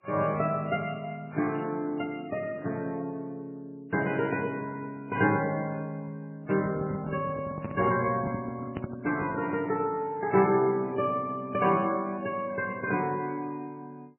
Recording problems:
lossy codec; MP3, then MP3, log-spectral distance 3 dB, nothing above 2.4 kHz
handling noise; from 6.5 to 9.5 s; peak 0 dB vs average level

